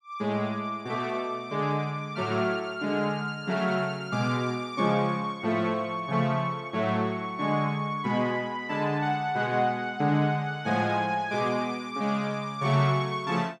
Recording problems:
none

